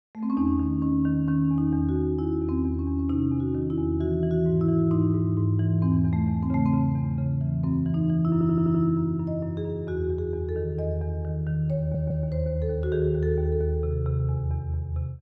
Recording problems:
stutter; at 8.5 s and at 12 s

